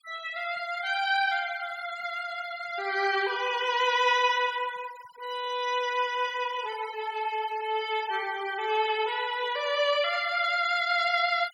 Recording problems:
noise reduction artefacts; signal-to-artefact ratio 18 dB

